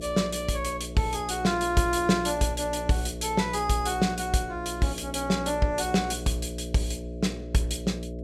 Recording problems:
hum; 60 Hz, harmonics up to 660 Hz, SNR 10 dB

